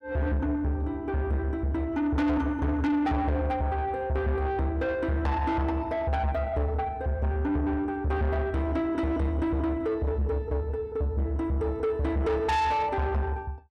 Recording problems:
distortion; soft clipping, signal-to-distortion ratio 7 dB

